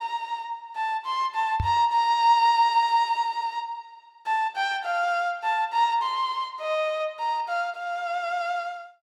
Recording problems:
microphone bump; at 1.5 s; peak +1 dB vs average level

